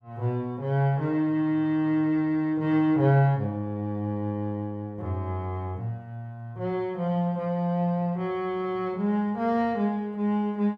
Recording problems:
none

